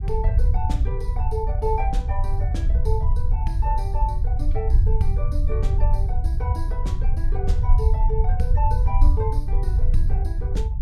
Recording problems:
rumble; below 70 Hz, SNR -9 dB

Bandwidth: 16 kHz